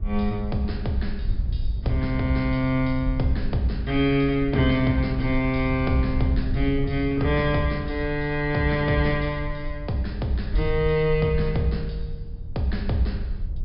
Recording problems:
treble cut off; nothing above 5.5 kHz
wind noise; below 70 Hz, SNR 9 dB

